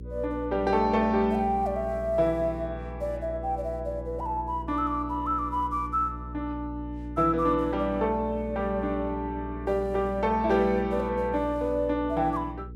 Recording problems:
hum; 60 Hz, harmonics up to 480 Hz, SNR 12 dB

